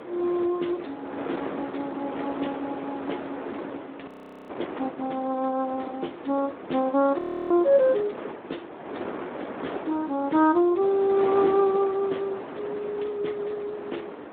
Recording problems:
telephone audio; 220 Hz to 3.6 kHz, Speex
wind noise; below 950 Hz, SNR 10 dB
audio freezing; at 4 s and at 7 s

